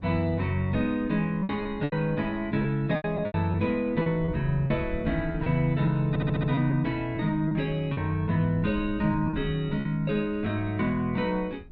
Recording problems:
wind on the microphone; below 110 Hz, SNR 16 dB
packet loss; 6% of the sound replaced, filled with repeated pitch periods
stutter; at 6 s

